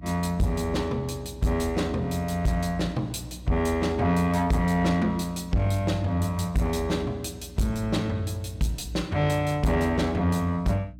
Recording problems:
distortion; soft clipping, signal-to-distortion ratio 11 dB
electrical hum; 60 Hz, harmonics up to 300 Hz, SNR 18 dB

